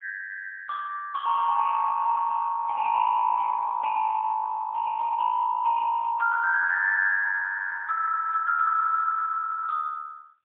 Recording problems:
phone line; 260 Hz to 2.5 kHz, AMR-NB, then MP3

